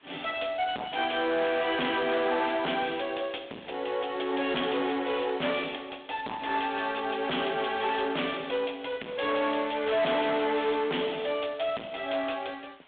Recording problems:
phone line; 260 Hz to 3.5 kHz, G.726
distorted audio; hard clipping, uneven, signal-to-distortion ratio 5 dB
hiss; SNR 29 dB

